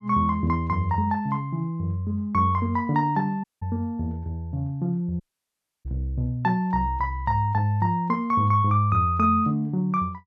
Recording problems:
audio cutting out; at 3.5 s and at 5 s for 0.5 s

